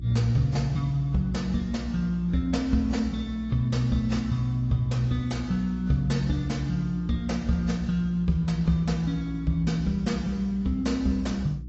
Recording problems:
lossy compression; AAC, log-spectral distance 2 dB, nothing above 7.3 kHz
hum; 60 Hz, harmonics up to 360 Hz, SNR 12 dB

